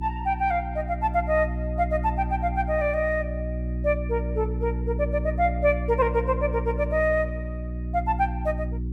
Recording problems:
hum; 60 Hz, harmonics up to 360 Hz, SNR 5 dB

